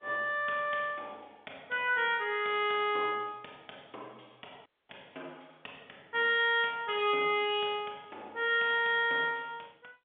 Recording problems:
telephone audio; 280 Hz to 3.6 kHz, G.711
audio cutting out; at 4.5 s

